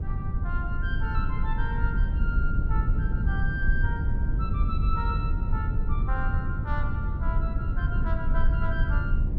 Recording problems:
rumble; below 86 Hz, SNR -8 dB

